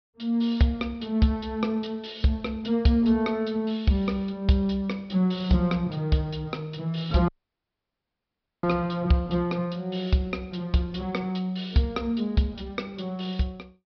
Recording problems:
low-pass filter; nothing above 5.5 kHz
dropout; at 7.5 s for 1.5 s

